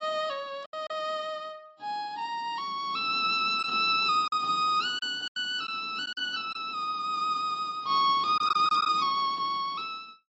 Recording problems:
codec artefacts; AAC, log-spectral distance 2 dB, nothing above 7.6 kHz
packet loss; 4% of the sound replaced, filled with silence

